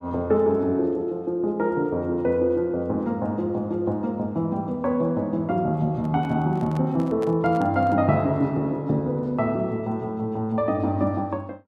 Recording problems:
handling noise; from 6 to 8 s; peak -9 dB vs average level

